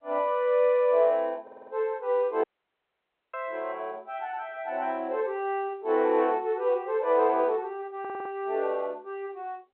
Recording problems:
telephone audio; 300 Hz to 3.3 kHz, G.711
stutter; at 1.5 s and at 8 s
audio cutting out; at 2.5 s for 1 s

